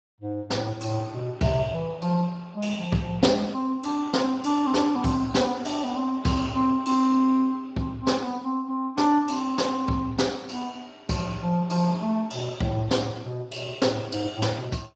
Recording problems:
lossy codec; Speex, log-spectral distance 4 dB, nothing above 7.3 kHz

